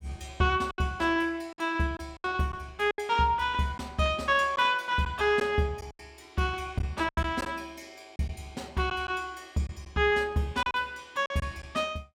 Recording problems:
lost packets; 7% of the sound replaced, filled with silence

